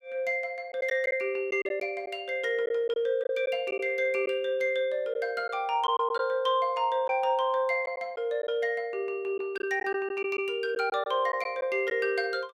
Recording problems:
packet loss; 4% of the sound replaced, filled with silence

